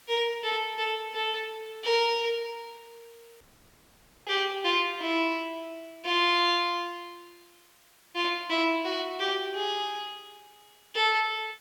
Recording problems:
hiss; slope 0 dB per octave, SNR 29 dB
audio cutting out; at 3.5 s for 1 s

